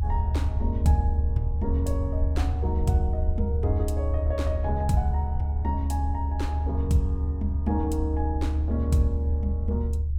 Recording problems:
low-frequency rumble; below 76 Hz, strongest tone 74 Hz, SNR -3 dB

